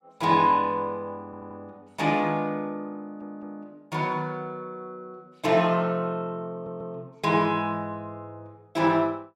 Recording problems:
stutter; at 1.5 s, at 3 s and at 6.5 s

